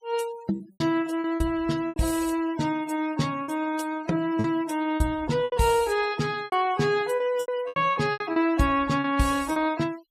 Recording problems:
noise reduction artefacts; signal-to-artefact ratio 19 dB
packet loss; 10% of the sound replaced, filled with repeated pitch periods

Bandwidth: 15.5 kHz